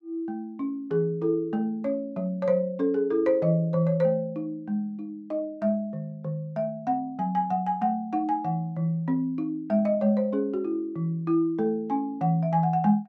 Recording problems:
none

